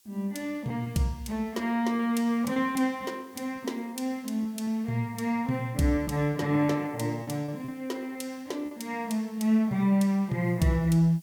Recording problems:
background hiss; SNR 29 dB
packet loss; 3% of the sound replaced, filled with repeated pitch periods

